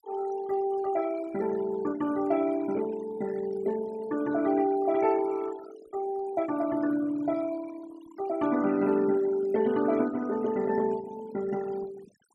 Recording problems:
noise reduction artefacts; signal-to-artefact ratio 18 dB

